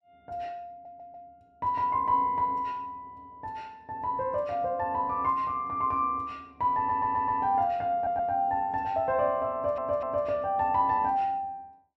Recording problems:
audio stuttering; 4 times, first at 0.5 s

